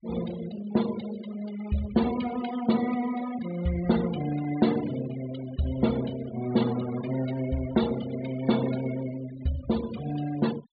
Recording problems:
treble cut off; nothing above 4.6 kHz
denoising artefacts; signal-to-artefact ratio 14 dB

